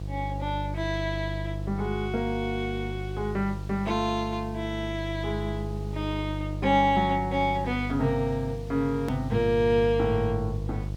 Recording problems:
hum; 50 Hz, harmonics up to 650 Hz, SNR 6 dB
background hiss; slope -1 dB per octave, SNR 26 dB
hard cut with a click; at 9 s

